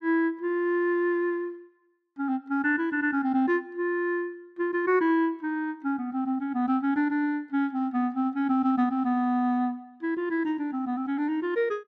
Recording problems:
none

